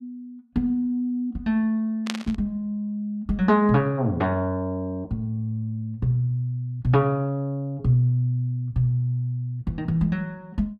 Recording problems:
burst of static; at 2 s; peak 0 dB vs average level

